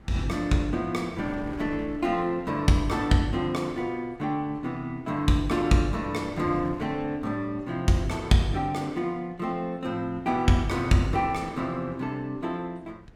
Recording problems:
wind on the microphone; below 370 Hz, SNR 19 dB

